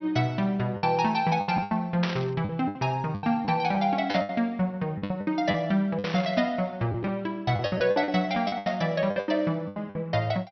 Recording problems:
treble cut off; nothing above 5.8 kHz
lost packets; 13% of the sound replaced, filled with the last packet
static burst; 4 times, first at 2 s; peak 0 dB vs average level

